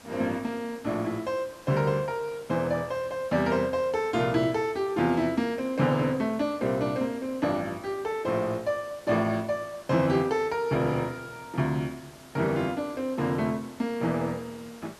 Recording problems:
hiss; slope -3 dB per octave, SNR 22 dB

